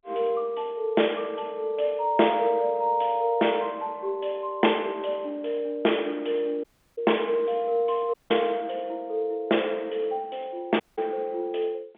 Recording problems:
telephone audio; 260 Hz to 3.5 kHz, G.711
dropout; at 6.5 s, at 8 s and at 11 s

